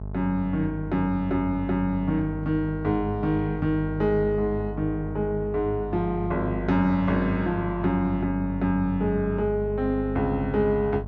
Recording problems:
hum; 50 Hz, harmonics up to 850 Hz, SNR 8 dB

